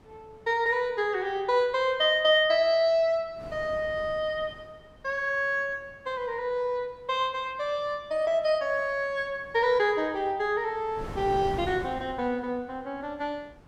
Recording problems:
wind on the microphone; below 570 Hz, SNR 19 dB

